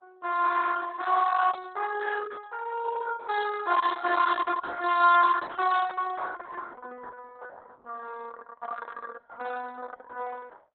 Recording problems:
lossy compression; Opus, log-spectral distance 4 dB, nothing above 3.8 kHz

